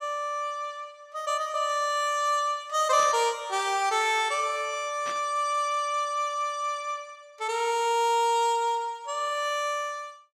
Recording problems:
burst of static; at 3 s and at 5 s; peak -8 dB vs average level

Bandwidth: 15.5 kHz